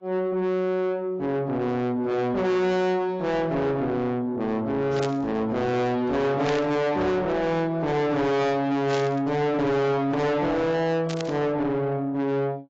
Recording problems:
codec artefacts; AAC, log-spectral distance 2 dB, nothing above 7.3 kHz
distortion; soft clipping, signal-to-distortion ratio 6 dB
static burst; 4 times, first at 5 s; peak -4 dB vs average level

